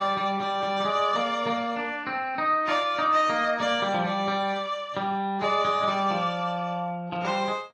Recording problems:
lossy codec; AAC, log-spectral distance 2 dB, nothing above 10.1 kHz

